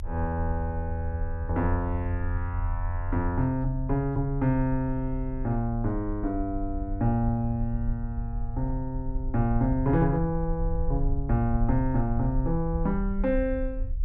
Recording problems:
low-frequency rumble; below 58 Hz, SNR 6 dB

